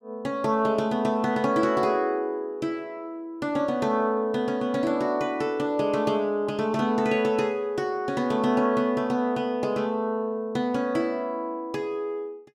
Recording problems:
none

